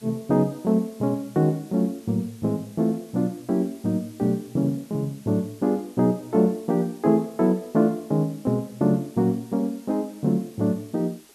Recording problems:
hiss; slope 0 dB per octave, SNR 26 dB

